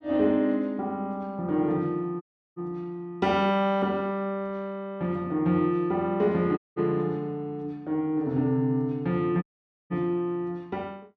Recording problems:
dropout; at 2 s, at 6.5 s and at 9.5 s

